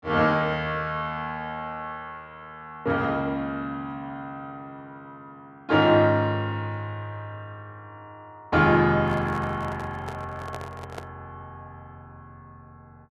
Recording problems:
microphone handling noise; from 9 to 11 s; peak -7 dB vs average level

